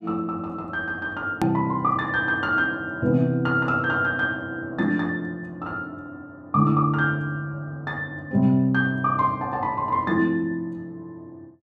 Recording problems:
edit click; at 1.5 s

